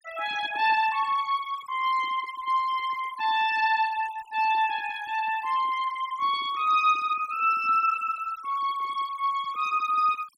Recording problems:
denoising artefacts; signal-to-artefact ratio 18 dB

